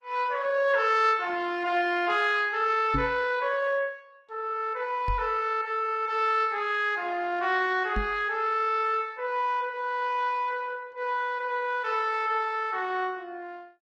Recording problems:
lossy compression; Opus, log-spectral distance 2 dB
microphone bump; at 3 s, at 5 s and at 8 s; peak 0 dB vs average level

